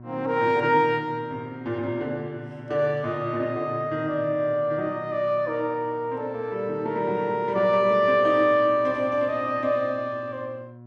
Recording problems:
mains hum; 60 Hz, harmonics up to 1.1 kHz, SNR 20 dB

